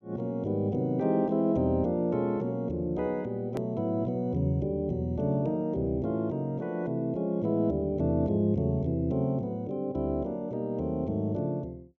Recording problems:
click at an edit; at 3.5 s

